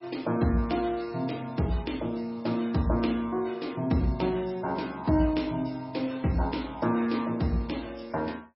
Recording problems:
lossy codec; MP3, log-spectral distance 4 dB, nothing above 5.5 kHz

